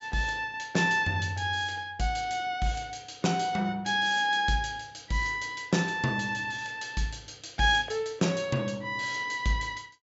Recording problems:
low-pass filter; nothing above 8 kHz

